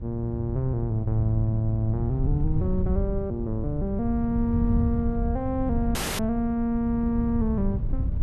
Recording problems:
wind on the microphone; below 110 Hz, SNR 3 dB
dropout; at 6 s

